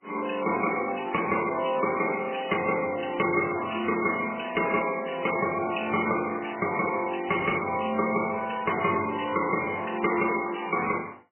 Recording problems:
lossy codec; MP3, log-spectral distance 10 dB, nothing above 3 kHz
distortion; soft clipping, signal-to-distortion ratio 9 dB

